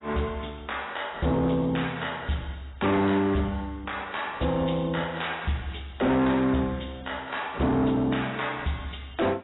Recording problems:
lossy compression; AAC, log-spectral distance 7 dB, nothing above 3.8 kHz
distorted audio; soft clipping, signal-to-distortion ratio 8 dB

